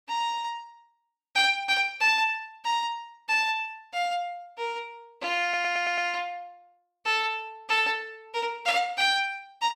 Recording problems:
stutter; at 5.5 s

